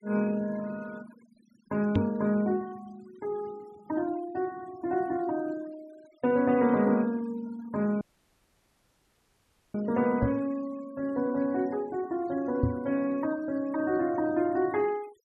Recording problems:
denoising artefacts; signal-to-artefact ratio 23 dB
microphone thump; at 2 s, at 10 s and at 13 s; peak +6 dB vs average level
dropout; at 8 s for 1.5 s

